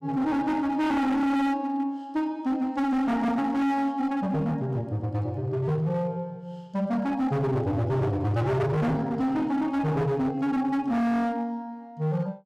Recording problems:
distortion; hard clipping, signal-to-distortion ratio 7 dB

